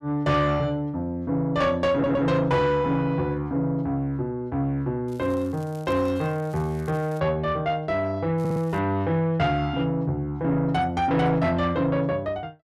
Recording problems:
distorted audio; soft clipping, signal-to-distortion ratio 11 dB
audio stuttering; at 2 s and at 8.5 s
crackle; from 5 to 7 s and at 8.5 s; loose cable, SNR 28 dB

